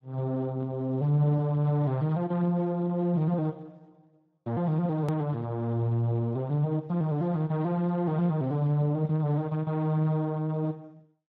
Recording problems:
lossy compression; Speex, log-spectral distance 2 dB, nothing above 13.1 kHz
edit click; at 5 s

